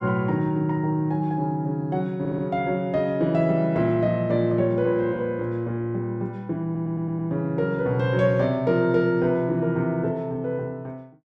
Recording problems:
audio stuttering; at 2 s and at 6.5 s

